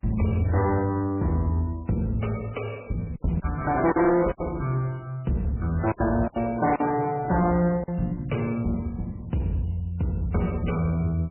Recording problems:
codec artefacts; MP3, log-spectral distance 3 dB, nothing above 3 kHz
distortion; soft clipping, signal-to-distortion ratio 10 dB
packet loss; 4% of the sound replaced, filled with silence

